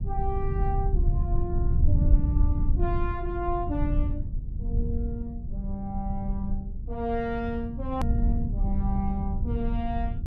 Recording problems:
low-frequency rumble; below 86 Hz, SNR -4 dB
click at an edit; at 8 s

